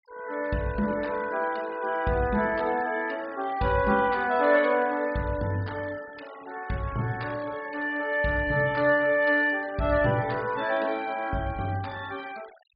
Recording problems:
treble missing; nothing above 5.1 kHz
denoising artefacts; signal-to-artefact ratio 22 dB

